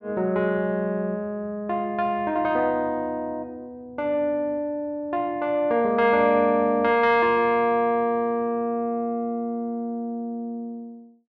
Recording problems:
none

